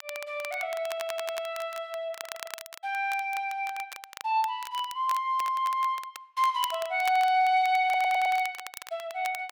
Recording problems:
crackle; vinyl, SNR 15 dB
audio stuttering; at 1 s, at 2 s and at 8 s

